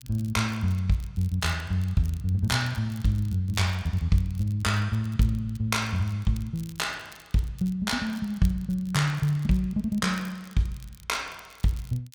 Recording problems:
crackle; vinyl, SNR 25 dB

